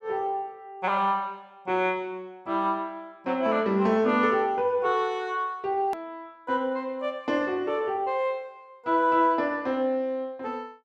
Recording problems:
hard cut with a click; at 6 s

